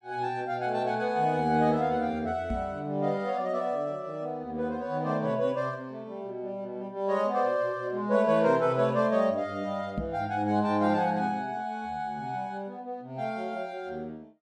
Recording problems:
knock on the microphone; at 2.5 s and at 10 s; peak 0 dB vs average level

